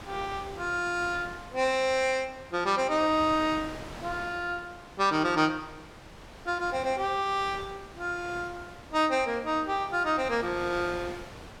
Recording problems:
wind on the microphone; below 1.9 kHz, SNR 16 dB

